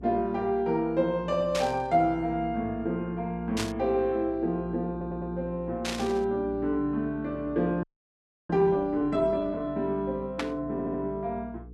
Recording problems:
hum; 60 Hz, harmonics up to 480 Hz, SNR 18 dB
burst of static; 4 times, first at 1.5 s; peak 0 dB vs average level
audio stuttering; at 5 s and at 11 s
frozen audio; at 8 s for 0.5 s

